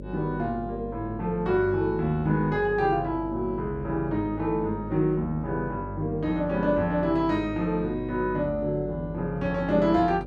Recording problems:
hum; 50 Hz, harmonics up to 600 Hz, SNR 12 dB

